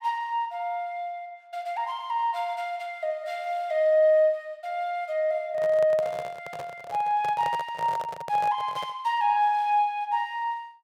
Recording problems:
microphone handling noise; from 5.5 to 9 s; peak -6 dB vs average level

